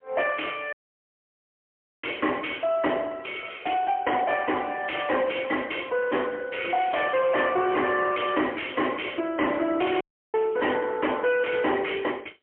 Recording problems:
phone line; 240 Hz to 3.1 kHz, AMR-NB, then MP3
distorted audio; hard clipping, signal-to-distortion ratio 6 dB
dropout; at 0.5 s for 1.5 s and at 10 s

